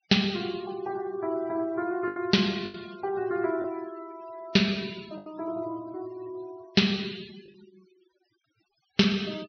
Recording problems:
treble cut off; nothing above 5.9 kHz
noise reduction artefacts; signal-to-artefact ratio 22 dB
packet loss; 4% of the sound replaced, filled with the last packet

